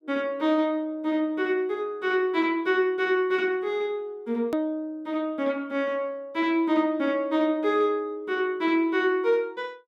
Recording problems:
edit click; at 4.5 s

